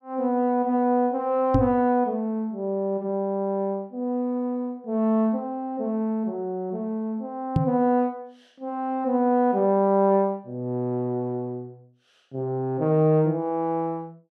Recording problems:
knock on the microphone; at 1.5 s and at 7.5 s; peak +7 dB vs average level

